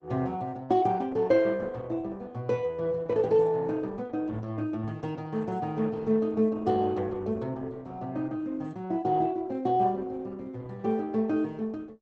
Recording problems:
lossy codec; Opus, log-spectral distance 2 dB, nothing above 7.8 kHz

